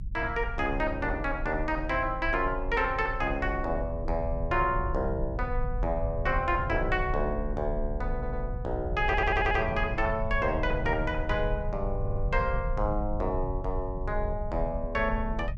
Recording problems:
low-frequency rumble; below 76 Hz, strongest tone 28 Hz, SNR 5 dB
stutter; at 8 s, at 9 s and at 12 s

